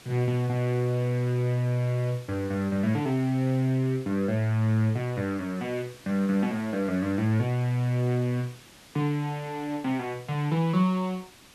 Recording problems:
hiss; slope -2 dB per octave, SNR 22 dB

